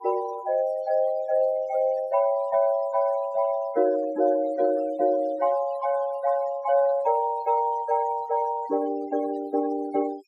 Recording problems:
noise reduction artefacts; signal-to-artefact ratio 22 dB

